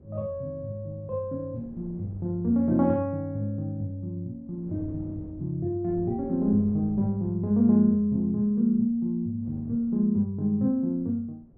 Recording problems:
wind noise; below 260 Hz, SNR 21 dB

